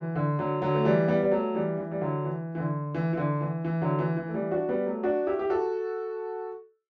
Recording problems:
none

